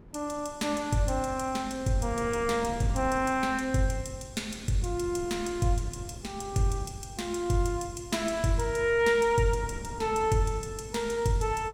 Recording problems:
wind on the microphone; below 280 Hz, SNR 18 dB

